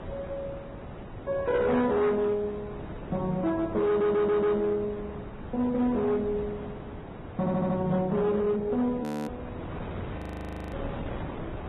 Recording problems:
lossy codec; AAC, then Vorbis, log-spectral distance 3 dB, nothing above 13.1 kHz
distortion; hard clipping, uneven, signal-to-distortion ratio 12 dB
wind on the microphone; below 650 Hz, SNR 13 dB
audio stuttering; at 4 s and at 7.5 s
audio freezing; at 9 s and at 10 s for 0.5 s

